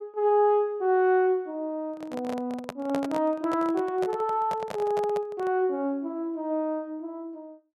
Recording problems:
handling noise; from 2 to 5.5 s; peak -3 dB vs average level

